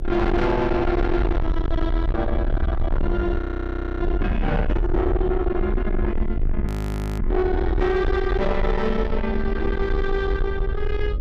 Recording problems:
distorted audio; soft clipping, signal-to-distortion ratio 7 dB
electrical hum; 50 Hz, harmonics up to 600 Hz, SNR 13 dB
low-frequency rumble; below 80 Hz, SNR 2 dB
audio freezing; at 3.5 s for 0.5 s and at 6.5 s for 0.5 s

